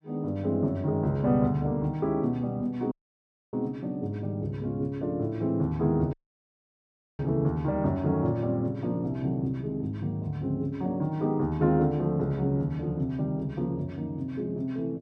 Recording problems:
dropout; at 3 s for 0.5 s and at 6 s for 1 s

